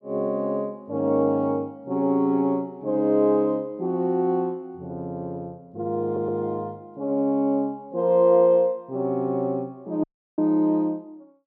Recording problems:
audio stuttering; at 6 s
audio cutting out; at 10 s

